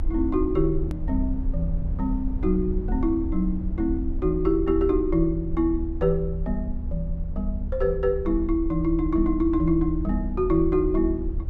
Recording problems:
rumble; below 70 Hz, SNR 6 dB
edit click; at 1 s

